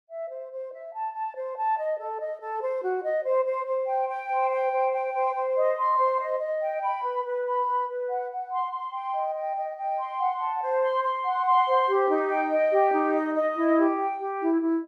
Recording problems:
none

